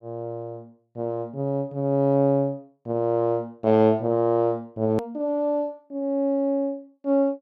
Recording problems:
hard cut with a click; at 5 s

